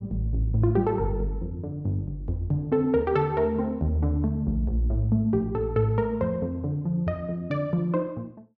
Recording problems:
none

